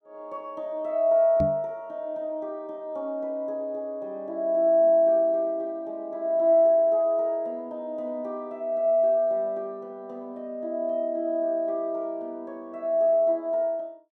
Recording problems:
microphone thump; at 1.5 s; peak -1 dB vs average level

